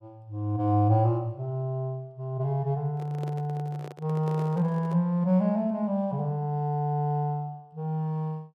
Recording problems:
handling noise; from 3 to 5 s; peak -9 dB vs average level

